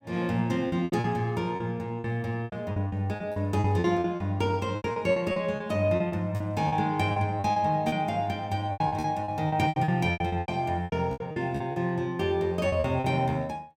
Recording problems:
packet loss; 16% of the sound replaced, filled with repeated pitch periods

